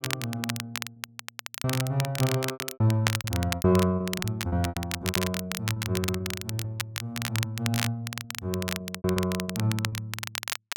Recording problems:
crackling; vinyl, SNR 4 dB
packet loss; 15% of the sound replaced, filled with repeated pitch periods

